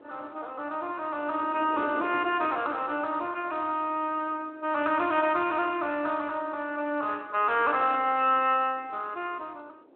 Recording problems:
phone line; 260 Hz to 3.4 kHz, Speex
wind on the microphone; below 540 Hz, SNR 18 dB

